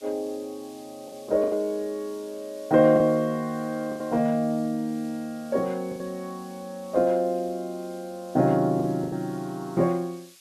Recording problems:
hiss; slope +4 dB per octave, SNR 25 dB
lost packets; 4% of the sound replaced, filled with the last packet

